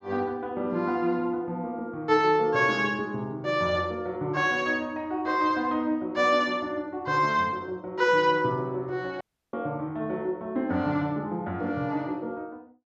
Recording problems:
dropout; at 9 s

